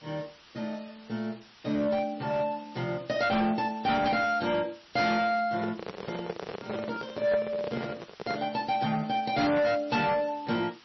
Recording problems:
codec artefacts; MP3, log-spectral distance 8 dB, nothing above 5.5 kHz
distorted audio; hard clipping, signal-to-distortion ratio 11 dB
hiss; slope 0 dB per octave, SNR 24 dB
microphone handling noise; from 5.5 to 8.5 s; peak -2 dB vs average level

